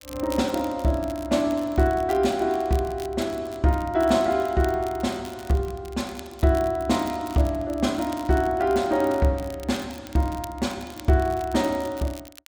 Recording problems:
crackling; vinyl, SNR 21 dB

